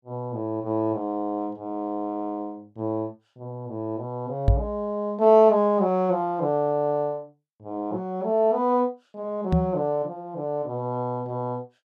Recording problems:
microphone bump; at 4.5 s and at 9.5 s; peak +9 dB vs average level

